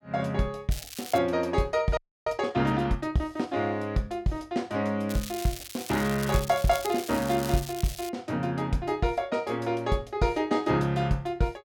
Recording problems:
crackling; at 0.5 s and from 5 to 8 s; loose cable, SNR 11 dB
audio freezing; at 2 s

